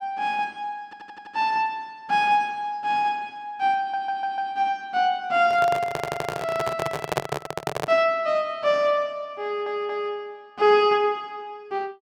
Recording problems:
audio stuttering; 4 times, first at 1 s
microphone handling noise; from 5.5 to 8 s; peak +4 dB vs average level

